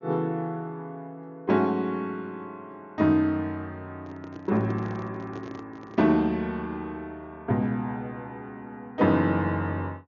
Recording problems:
treble cut off; nothing above 6.8 kHz
handling noise; from 4 to 6 s; peak -10 dB vs average level

